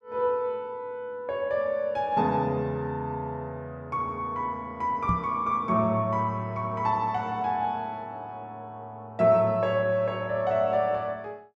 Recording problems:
microphone bump; at 5 s; peak +2 dB vs average level

